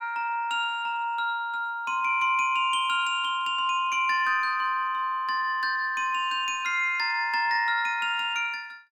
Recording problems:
none

